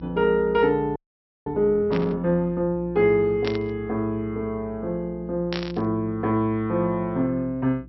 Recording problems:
low-pass filter; nothing above 5.6 kHz
hum; 60 Hz, harmonics up to 360 Hz, SNR 20 dB
audio freezing; at 1 s for 0.5 s
burst of static; at 2 s, at 3.5 s and at 5.5 s; peak -3 dB vs average level

